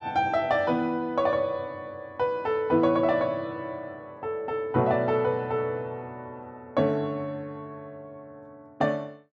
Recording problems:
none

